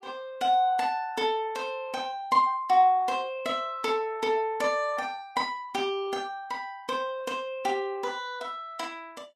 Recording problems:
lossy codec; Vorbis, log-spectral distance 2 dB, nothing above 13.8 kHz

